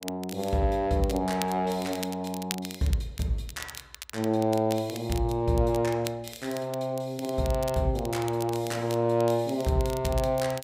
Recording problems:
crackling; vinyl, SNR 14 dB

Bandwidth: 15.5 kHz